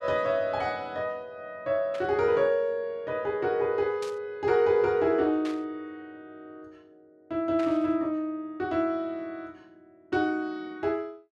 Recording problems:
static burst; 4 times, first at 2 s; peak -9 dB vs average level

